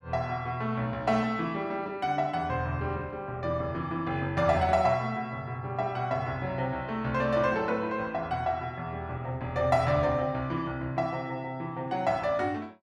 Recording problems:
none

